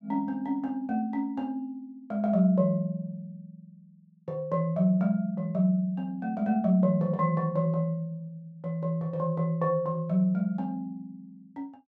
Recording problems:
none

